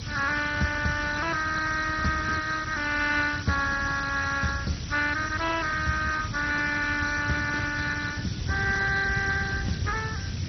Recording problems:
lossy compression; Speex, then MP2, log-spectral distance 9 dB, nothing above 6 kHz
background hiss; slope +6 dB per octave, SNR 13 dB
low-frequency rumble; below 170 Hz, SNR 8 dB

